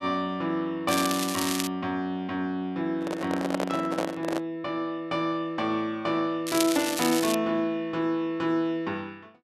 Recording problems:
crackling; at 1 s and at 6.5 s; loose cable, SNR 3 dB
handling noise; from 3 to 4.5 s; peak +3 dB vs average level

